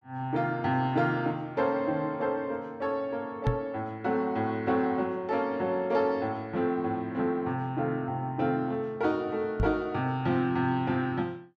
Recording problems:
microphone thump; at 3.5 s and at 9.5 s; peak +5 dB vs average level

